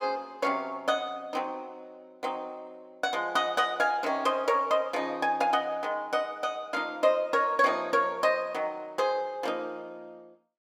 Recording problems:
none

